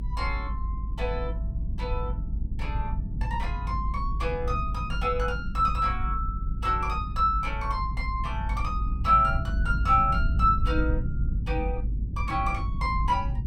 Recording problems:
rumble; below 86 Hz, strongest tone 52 Hz, SNR 3 dB

